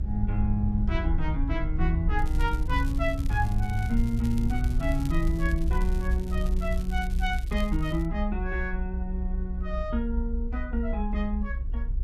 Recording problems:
rumble; below 62 Hz, SNR -1 dB
crackling; from 2 to 8 s; loose cable, SNR 19 dB

